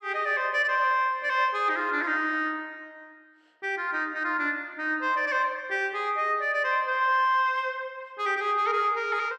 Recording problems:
none

